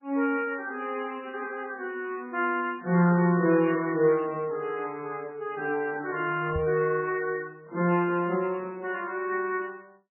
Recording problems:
codec artefacts; AAC, then MP3, log-spectral distance 2 dB, nothing above 2.8 kHz
knock on the microphone; at 6.5 s; peak -2 dB vs average level

